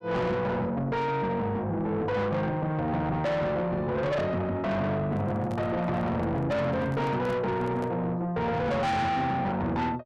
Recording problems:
distorted audio; soft clipping, signal-to-distortion ratio 7 dB
microphone handling noise; from 5 to 8 s; peak -6 dB vs average level

